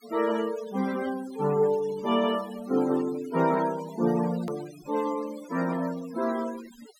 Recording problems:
noise reduction artefacts; signal-to-artefact ratio 16 dB
click at an edit; at 4.5 s

